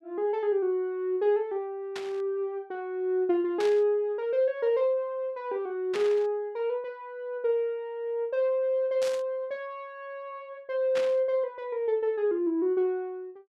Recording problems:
burst of static; 5 times, first at 2 s; peak -4 dB vs average level

